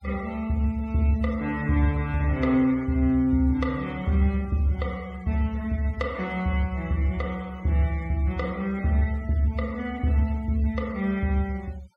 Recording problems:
noise reduction artefacts; signal-to-artefact ratio 25 dB

